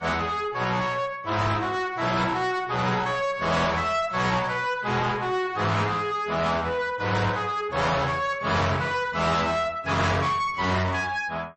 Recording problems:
codec artefacts; AAC, then MP3, log-spectral distance 3 dB, nothing above 8 kHz
distortion; soft clipping, signal-to-distortion ratio 6 dB

